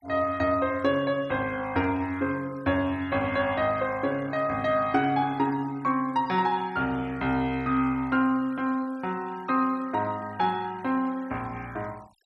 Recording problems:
noise reduction artefacts; signal-to-artefact ratio 24 dB

